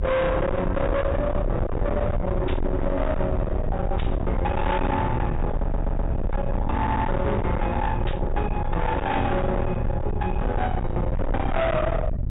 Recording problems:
treble cut off; nothing above 4 kHz
distortion; hard clipping, signal-to-distortion ratio 6 dB
rumble; below 180 Hz, SNR 2 dB
burst of static; at 2.5 s, at 4 s and at 8 s; peak -6 dB vs average level
audio stuttering; at 5.5 s and at 7 s

